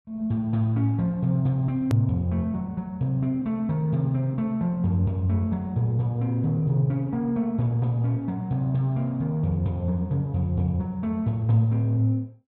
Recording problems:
click at an edit; at 2 s

